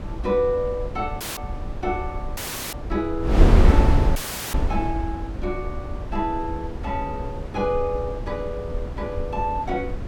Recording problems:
wind noise; below 140 Hz, SNR -1 dB
dropout; at 1 s, at 2.5 s and at 4 s

